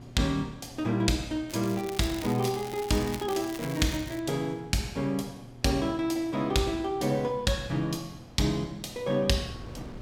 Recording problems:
electrical hum; 60 Hz, harmonics up to 960 Hz, SNR 22 dB
wind on the microphone; below 400 Hz, SNR 22 dB
crackle; from 1.5 to 4 s; loose cable, SNR 14 dB

